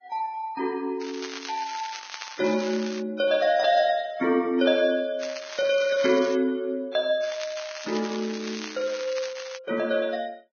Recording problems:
codec artefacts; Vorbis, log-spectral distance 6 dB, nothing above 5 kHz
crackling; from 1 to 3 s, from 5 to 6.5 s and from 7 to 9.5 s; loose cable, SNR 12 dB

